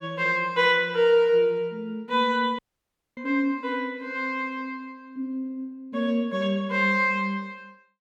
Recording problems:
audio cutting out; at 2.5 s for 0.5 s

